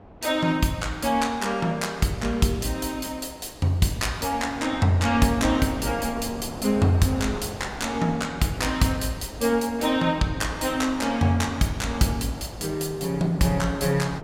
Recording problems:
wind noise; below 730 Hz, SNR 16 dB

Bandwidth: 16 kHz